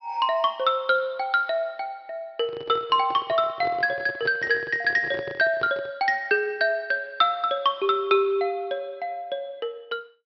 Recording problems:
treble cut off; nothing above 5.5 kHz
handling noise; from 2.5 to 6 s; peak -7 dB vs average level

